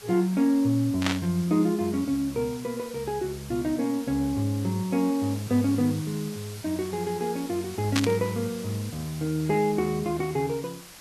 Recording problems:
lossy compression; Vorbis, log-spectral distance 5 dB, nothing above 13.1 kHz
hiss; slope 0 dB per octave, SNR 16 dB
static burst; at 1 s and at 8 s; peak +5 dB vs average level

